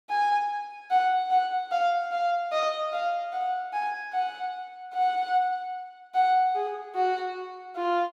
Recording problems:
none

